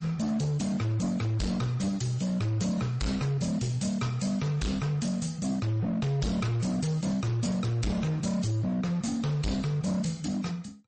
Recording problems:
codec artefacts; AAC, then MP3, log-spectral distance 4 dB, nothing above 8.2 kHz
distortion; hard clipping, signal-to-distortion ratio 7 dB

